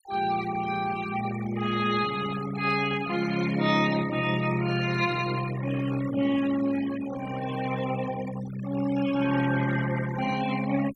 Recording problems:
noise reduction artefacts; signal-to-artefact ratio 14 dB

